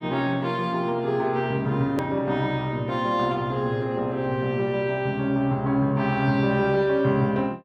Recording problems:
edit click; at 2 s

